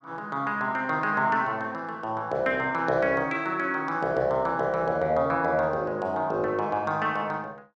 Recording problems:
none

